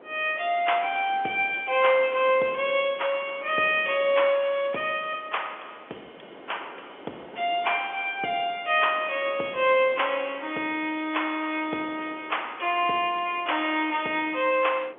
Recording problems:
telephone audio; 260 Hz to 3.3 kHz, G.711
wind on the microphone; below 950 Hz, SNR 21 dB

